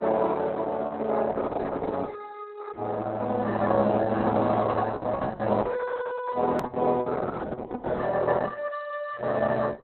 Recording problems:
lossy compression; Opus, log-spectral distance 4 dB, nothing above 13.3 kHz
edit click; at 6.5 s

